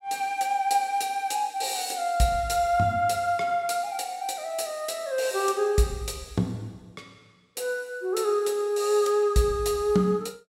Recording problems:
none

